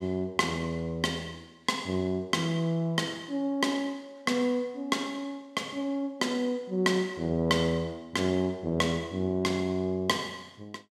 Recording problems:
none

